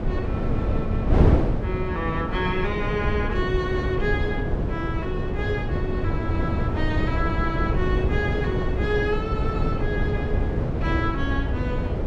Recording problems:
wind noise; below 270 Hz, SNR -3 dB

